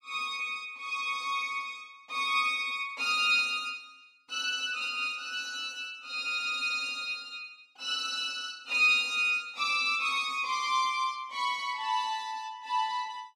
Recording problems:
none

